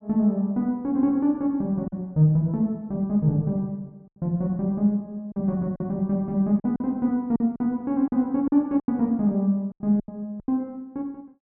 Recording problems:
lost packets; 6% of the sound replaced, filled with silence

